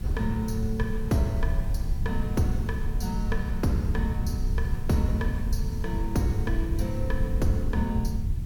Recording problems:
electrical hum; 60 Hz, harmonics up to 1.1 kHz, SNR 21 dB
hiss; SNR 22 dB
rumble; below 86 Hz, SNR 0 dB

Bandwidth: 17.5 kHz